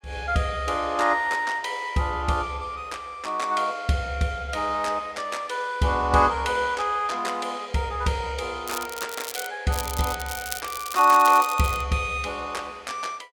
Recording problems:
crackling; at 8.5 s and from 9.5 to 12 s; loose cable, SNR 10 dB

